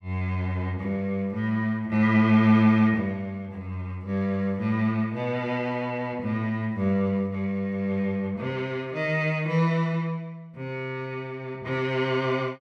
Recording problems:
none

